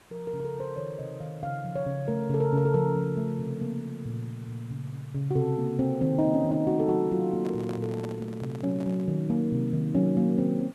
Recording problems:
background hiss; slope -4 dB per octave, SNR 27 dB
handling noise; from 7.5 to 9 s; peak -8 dB vs average level

